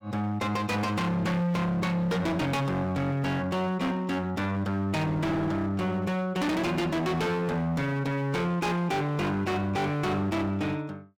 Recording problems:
distortion; hard clipping, signal-to-distortion ratio 8 dB

